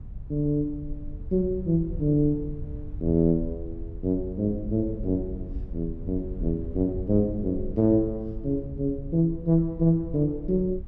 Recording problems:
rumble; below 78 Hz, SNR 12 dB

